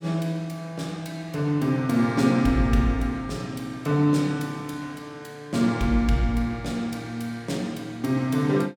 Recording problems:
none

